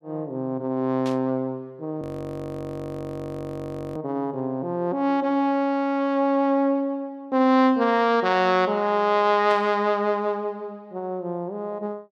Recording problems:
burst of static; at 1 s and at 9.5 s; peak -9 dB vs average level
frozen audio; at 2 s for 2 s

